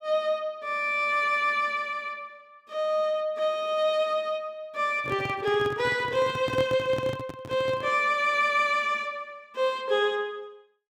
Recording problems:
microphone handling noise; from 5 to 8 s; peak -4 dB vs average level

